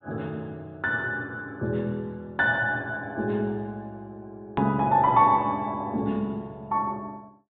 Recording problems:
low-pass filter; nothing above 4 kHz
edit click; at 4.5 s

